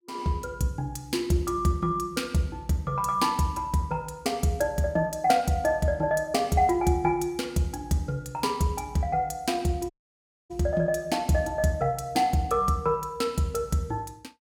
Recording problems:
audio cutting out; at 10 s for 0.5 s

